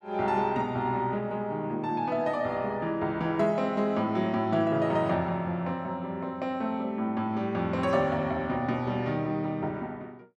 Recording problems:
none

